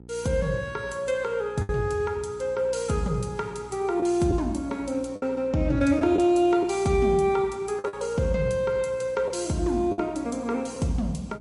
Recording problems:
codec artefacts; MP3, log-spectral distance 2 dB, nothing above 11 kHz
electrical hum; 60 Hz, harmonics up to 900 Hz, SNR 23 dB
lost packets; 4% of the sound replaced, filled with the last packet

